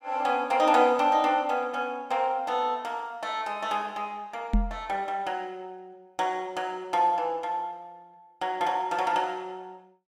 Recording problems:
microphone thump; at 4.5 s; peak +5 dB vs average level

